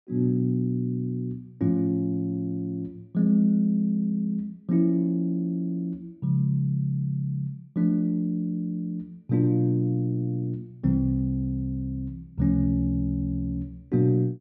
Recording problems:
none

